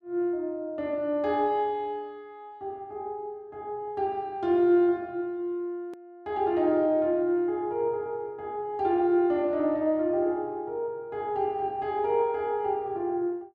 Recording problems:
click at an edit; at 6 s

